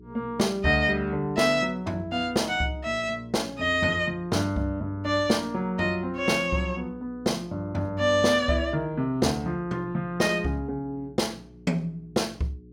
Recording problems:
mains hum; 60 Hz, harmonics up to 420 Hz, SNR 22 dB

